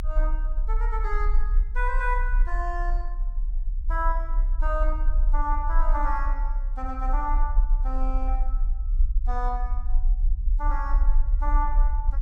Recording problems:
rumble; below 38 Hz, strongest tone 32 Hz, SNR -5 dB

